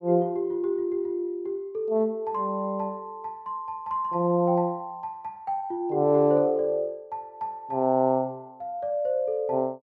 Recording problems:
none

